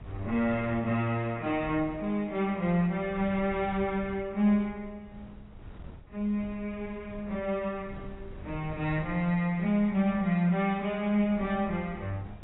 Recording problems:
lossy compression; AAC, log-spectral distance 2 dB, nothing above 3.9 kHz
wind noise; below 150 Hz, SNR 19 dB

